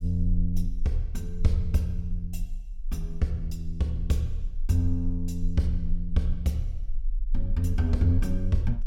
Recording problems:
rumble; below 34 Hz, strongest tone 22 Hz, SNR 7 dB

